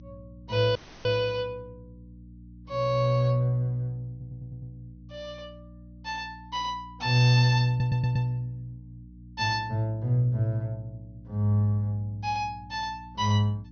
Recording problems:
low-pass filter; nothing above 6.3 kHz
hum; 60 Hz, harmonics up to 300 Hz, SNR 21 dB
audio cutting out; at 1 s
audio stuttering; at 4 s and at 7.5 s

